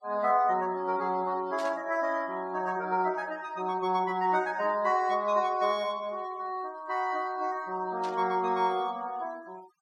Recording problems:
denoising artefacts; signal-to-artefact ratio 25 dB
static burst; at 1.5 s and at 8 s; peak -11 dB vs average level

